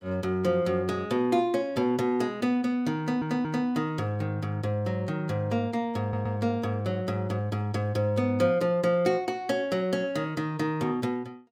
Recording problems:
audio stuttering; at 3 s and at 6 s

